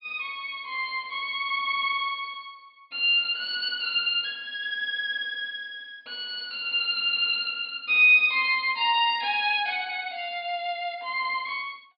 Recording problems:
low-pass filter; nothing above 4.8 kHz

